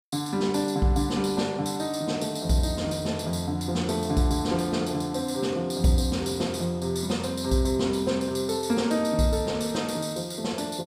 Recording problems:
none

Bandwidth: 15.5 kHz